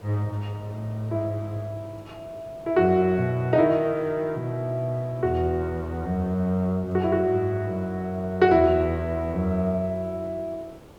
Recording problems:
background hiss; SNR 23 dB

